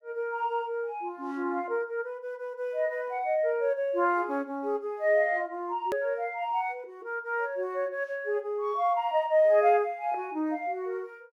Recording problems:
hard cut with a click; at 6 s

